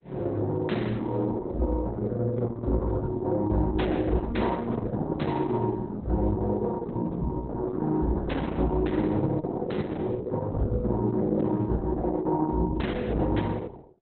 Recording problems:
lossy compression; Opus, log-spectral distance 3 dB, nothing above 4 kHz

